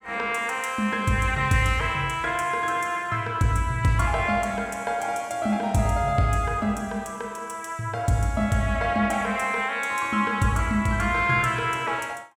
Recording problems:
none

